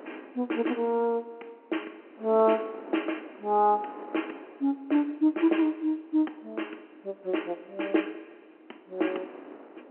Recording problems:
telephone audio; 240 Hz to 3.2 kHz, G.711
wind noise; below 780 Hz, SNR 21 dB

